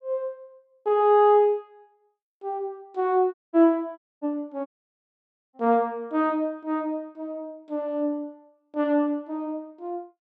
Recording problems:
audio cutting out; at 3.5 s, at 4 s and at 4.5 s for 1 s

